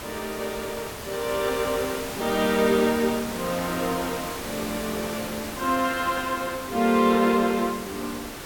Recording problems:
hiss; slope -4 dB per octave, SNR 8 dB

